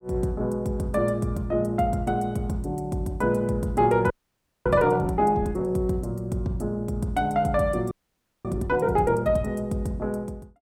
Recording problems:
audio freezing; at 4 s for 0.5 s and at 8 s for 0.5 s

